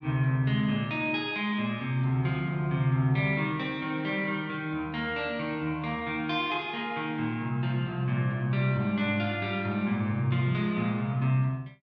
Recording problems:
none

